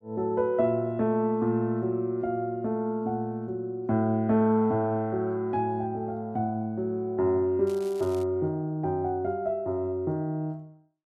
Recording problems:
crackle; at 7.5 s; loose cable, SNR 24 dB

